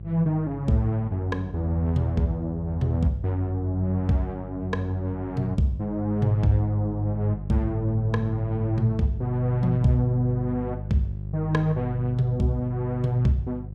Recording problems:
electrical hum; 50 Hz, harmonics up to 400 Hz, SNR 10 dB

